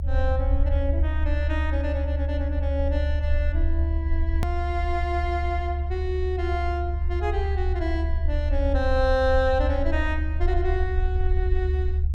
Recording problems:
low-frequency rumble; below 74 Hz, strongest tone 72 Hz, SNR -3 dB
click at an edit; at 4.5 s

